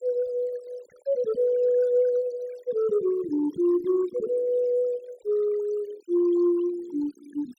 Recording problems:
noise reduction artefacts; signal-to-artefact ratio 22 dB

